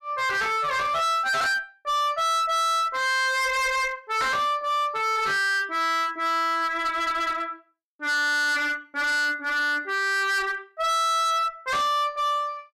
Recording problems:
distorted audio; hard clipping, uneven, signal-to-distortion ratio 6 dB

